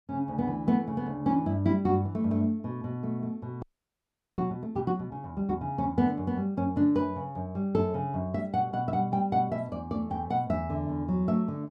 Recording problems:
audio freezing; at 3.5 s for 1 s

